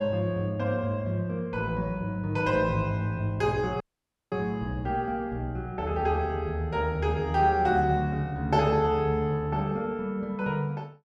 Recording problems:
audio cutting out; at 4 s for 0.5 s

